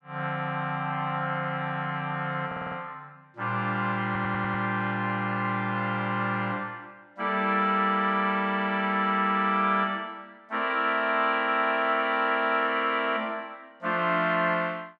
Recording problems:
stutter; at 2.5 s and at 4 s

